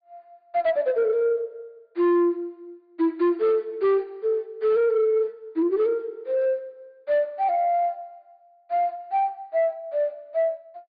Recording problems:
treble missing; nothing above 4.8 kHz
distortion; soft clipping, signal-to-distortion ratio 11 dB

